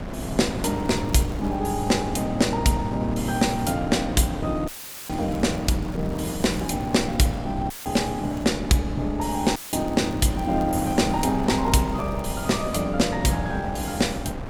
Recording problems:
wind noise; below 510 Hz, SNR 9 dB
crackling; 4 times, first at 0.5 s; loose cable, SNR 27 dB
dropout; at 4.5 s, at 7.5 s and at 9.5 s; filled with static

